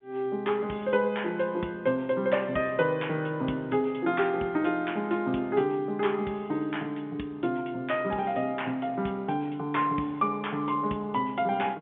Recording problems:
telephone audio; 130 Hz to 3.6 kHz, G.711

